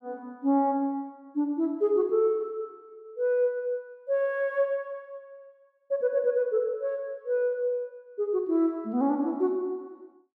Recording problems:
none

